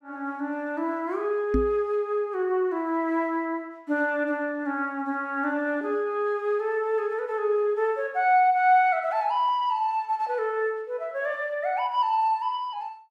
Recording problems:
microphone thump; at 1.5 s; peak +4 dB vs average level

